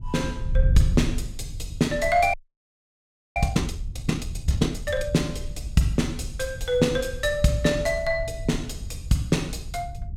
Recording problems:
wind on the microphone; below 80 Hz, SNR 7 dB
frozen audio; at 2.5 s for 1 s

